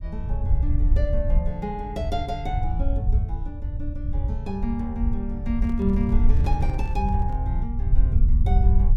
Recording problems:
rumble; below 72 Hz, SNR -5 dB
microphone handling noise; from 5.5 to 7.5 s; peak -8 dB vs average level

